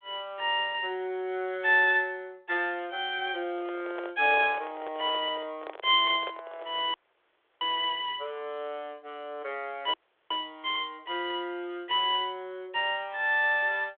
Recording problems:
phone line; 300 Hz to 3.5 kHz, G.726
microphone handling noise; from 3.5 to 7 s; peak -7 dB vs average level
audio cutting out; at 7 s for 0.5 s and at 10 s

